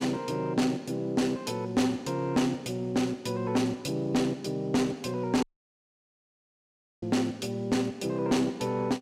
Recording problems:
distortion; soft clipping, signal-to-distortion ratio 11 dB
audio cutting out; at 5.5 s for 1.5 s

